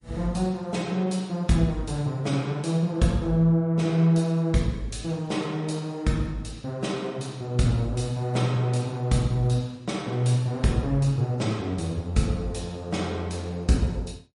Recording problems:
lossy compression; MP3, log-spectral distance 2 dB, nothing above 10.4 kHz

